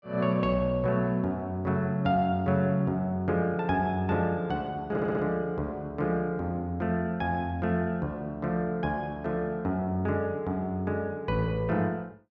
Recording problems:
audio stuttering; at 5 s

